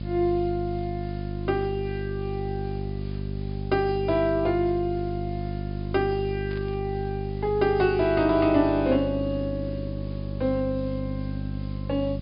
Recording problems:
low-pass filter; nothing above 5 kHz
hum; 50 Hz, harmonics up to 600 Hz, SNR 6 dB
hiss; SNR 27 dB
static burst; at 6.5 s; peak -15 dB vs average level

